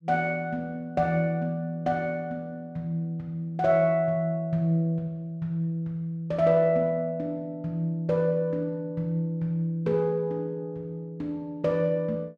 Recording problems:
none

